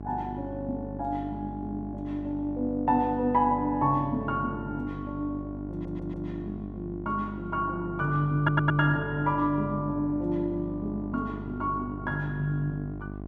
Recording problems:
electrical hum; 50 Hz, harmonics up to 1.1 kHz, SNR 10 dB
stutter; at 5.5 s and at 8.5 s

